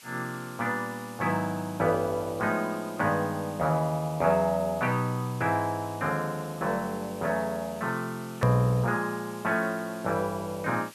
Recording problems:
background hiss; SNR 19 dB
hard cut with a click; at 8.5 s

